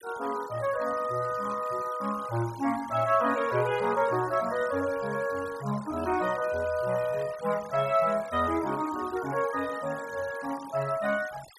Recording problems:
denoising artefacts; signal-to-artefact ratio 18 dB

